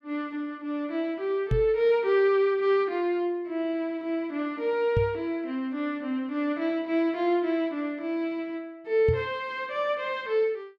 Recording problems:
microphone thump; at 1.5 s, at 5 s and at 9 s; peak +4 dB vs average level

